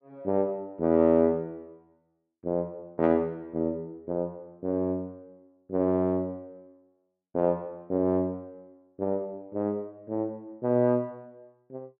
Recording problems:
none

